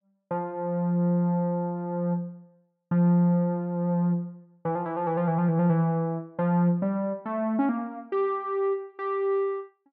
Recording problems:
none

